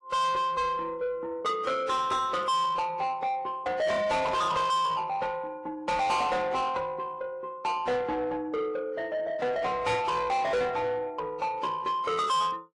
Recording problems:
lossy codec; AAC, log-spectral distance 2 dB, nothing above 10.1 kHz
distortion; soft clipping, signal-to-distortion ratio 6 dB

